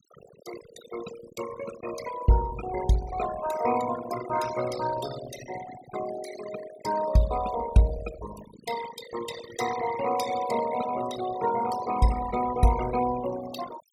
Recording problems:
denoising artefacts; signal-to-artefact ratio 9 dB

